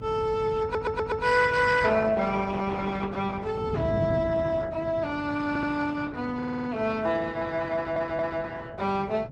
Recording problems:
lossy compression; Opus, log-spectral distance 3 dB
hum; 50 Hz, harmonics up to 600 Hz, SNR 18 dB
wind noise; below 210 Hz, SNR 12 dB
audio stuttering; 4 times, first at 0.5 s

